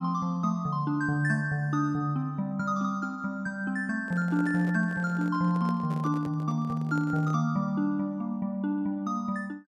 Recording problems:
handling noise; from 4 to 7.5 s; peak -9 dB vs average level

